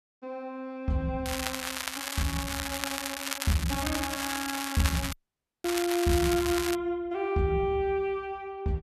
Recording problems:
crackling; from 1.5 to 3.5 s and from 3.5 to 7 s; loose cable, SNR 3 dB
dropout; at 5 s for 0.5 s

